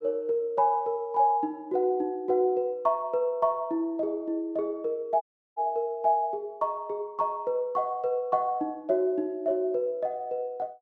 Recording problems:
dropout; at 5 s

